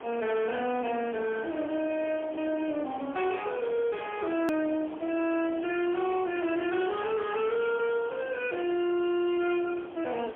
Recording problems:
telephone audio; 240 Hz to 3.3 kHz, AMR-NB, then MP3
distortion; hard clipping, signal-to-distortion ratio 11 dB
background hiss; SNR 15 dB
hard cut with a click; at 4.5 s

